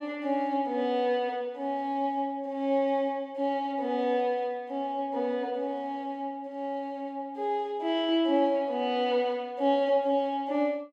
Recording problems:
none

